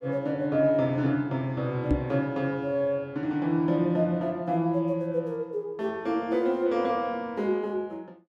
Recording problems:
microphone thump; at 2 s; peak +6 dB vs average level

